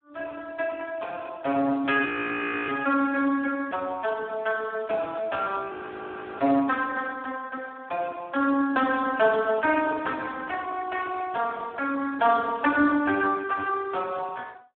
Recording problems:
phone line; 240 Hz to 3.4 kHz, Speex
audio freezing; at 2 s for 0.5 s and at 5.5 s for 0.5 s

